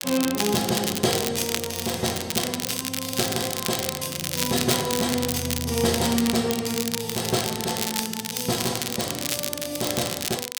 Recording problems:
crackling; vinyl, SNR 2 dB

